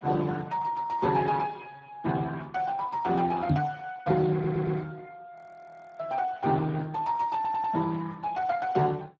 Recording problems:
lossy compression; Speex, log-spectral distance 3 dB
microphone bump; at 3.5 s; peak +6 dB vs average level
audio stuttering; at 4.5 s and at 7.5 s
audio freezing; at 5.5 s for 0.5 s

